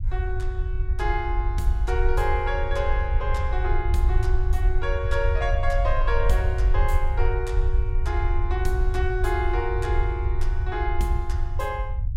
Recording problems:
rumble; below 66 Hz, SNR -3 dB

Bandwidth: 16.5 kHz